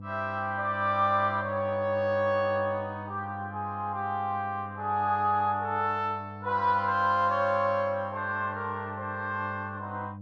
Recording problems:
electrical hum; 50 Hz, harmonics up to 600 Hz, SNR 13 dB

